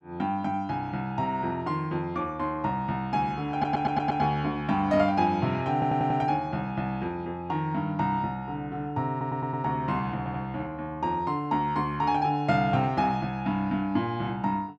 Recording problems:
stutter; 4 times, first at 3.5 s

